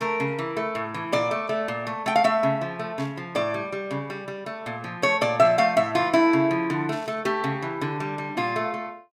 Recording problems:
static burst; at 3 s, at 5.5 s and at 7 s; peak -14 dB vs average level

